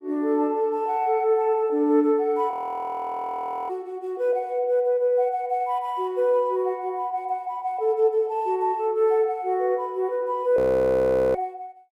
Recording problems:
frozen audio; at 2.5 s for 1 s and at 11 s for 1 s

